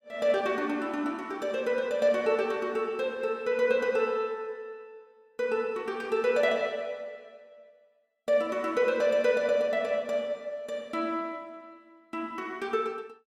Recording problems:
none

